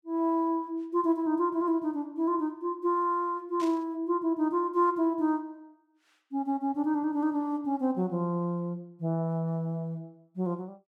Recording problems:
static burst; at 3.5 s; peak -11 dB vs average level

